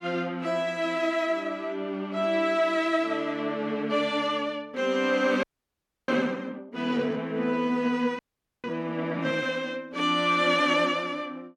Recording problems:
audio freezing; at 5.5 s for 0.5 s and at 8 s

